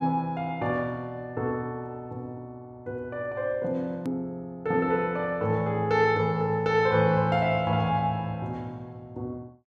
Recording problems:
edit click; at 4 s

